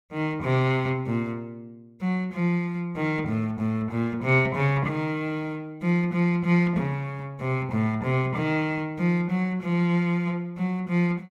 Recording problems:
none

